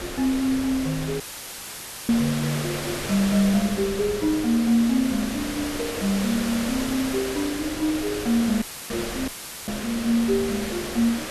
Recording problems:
background hiss; SNR 7 dB
wind noise; below 320 Hz, SNR 18 dB
dropout; at 1 s for 1 s, at 8.5 s and at 9.5 s; filled with static

